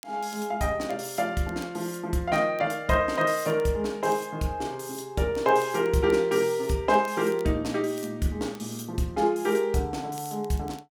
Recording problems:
crackling; vinyl, SNR 27 dB

